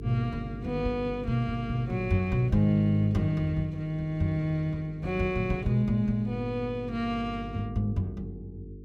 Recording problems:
hum; 50 Hz, harmonics up to 450 Hz, SNR 13 dB

